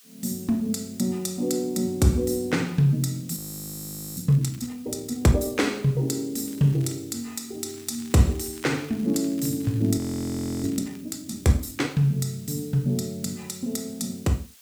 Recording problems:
hiss; slope +3 dB per octave, SNR 24 dB
frozen audio; at 3.5 s for 1 s and at 10 s for 0.5 s
crackling; at 4.5 s, at 6.5 s and from 7.5 to 11 s; loose cable, SNR 25 dB

